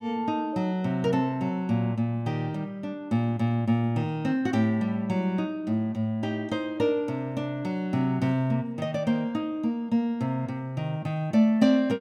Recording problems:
none

